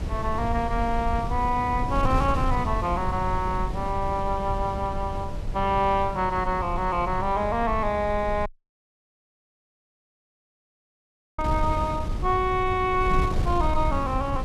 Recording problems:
wind noise; below 110 Hz, SNR 5 dB
dropout; at 8.5 s for 3 s

